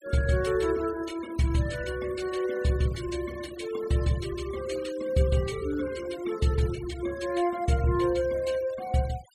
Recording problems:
noise reduction artefacts; signal-to-artefact ratio 18 dB

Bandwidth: 14.5 kHz